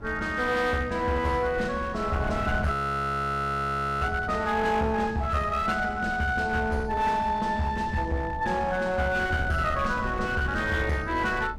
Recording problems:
distorted audio; hard clipping, uneven, signal-to-distortion ratio 11 dB
wind on the microphone; below 240 Hz, SNR 13 dB
audio freezing; at 2.5 s for 1.5 s

